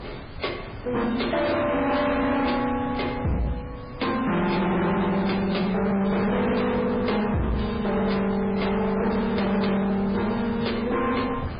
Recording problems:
codec artefacts; MP3, then MP3, log-spectral distance 6 dB, nothing above 4.9 kHz
distortion; hard clipping, signal-to-distortion ratio 6 dB
hiss; SNR 27 dB
wind on the microphone; below 770 Hz, SNR 13 dB

